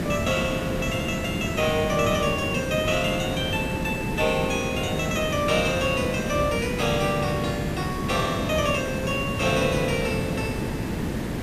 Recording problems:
hiss; slope -7 dB per octave, SNR 3 dB

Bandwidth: 14.5 kHz